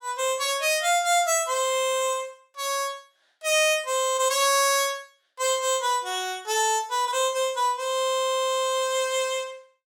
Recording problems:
none

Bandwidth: 17 kHz